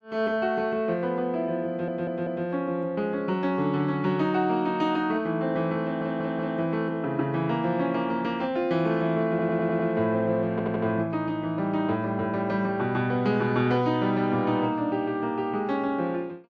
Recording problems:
audio stuttering; 4 times, first at 1.5 s

